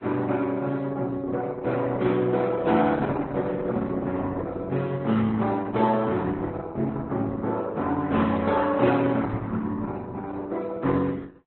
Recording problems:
lossy codec; Opus, then Vorbis, log-spectral distance 3 dB, nothing above 3.9 kHz

